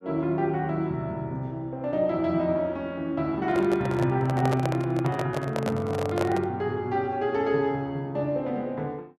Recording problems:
microphone handling noise; from 3.5 to 6.5 s; peak +2 dB vs average level

